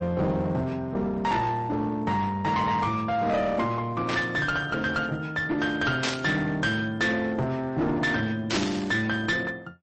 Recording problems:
codec artefacts; MP3, log-spectral distance 2 dB, nothing above 8.2 kHz
distortion; hard clipping, uneven, signal-to-distortion ratio 9 dB
burst of static; at 4 s, at 6 s and at 8.5 s; peak +2 dB vs average level

